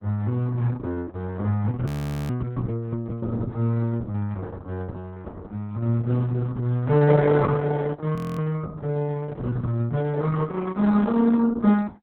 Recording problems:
lossy codec; Opus, log-spectral distance 3 dB, nothing above 18.3 kHz
audio freezing; at 2 s and at 8 s

